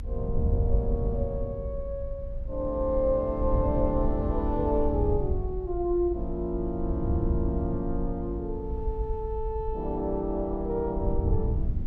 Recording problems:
rumble; below 56 Hz, SNR 7 dB
wind on the microphone; below 100 Hz, SNR 3 dB

